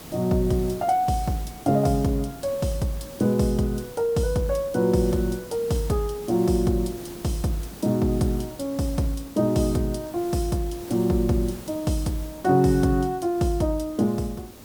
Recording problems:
hiss; slope -5 dB per octave, SNR 17 dB

